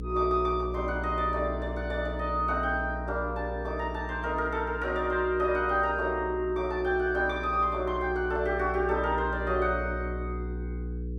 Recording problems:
electrical hum; 60 Hz, harmonics up to 480 Hz, SNR 8 dB

